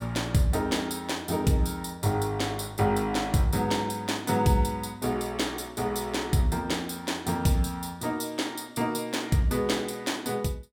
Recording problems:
none

